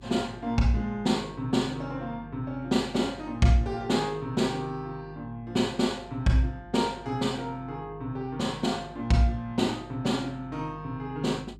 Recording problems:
hum; 50 Hz, harmonics up to 400 Hz, SNR 21 dB

